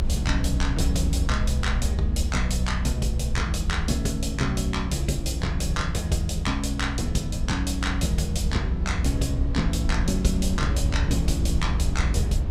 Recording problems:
rumble; below 74 Hz, strongest tone 62 Hz, SNR 1 dB

